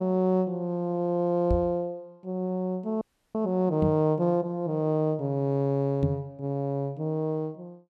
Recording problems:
microphone thump; at 1.5 s, at 4 s and at 6 s; peak +3 dB vs average level
frozen audio; at 3 s

